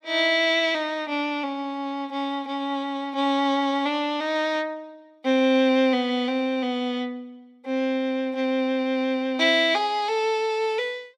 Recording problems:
none

